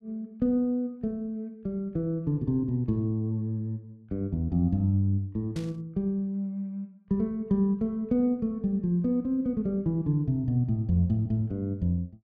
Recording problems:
static burst; at 5.5 s; peak -12 dB vs average level

